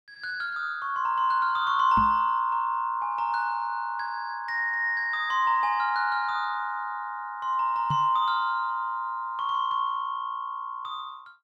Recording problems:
knock on the microphone; at 2 s and at 8 s; peak -2 dB vs average level

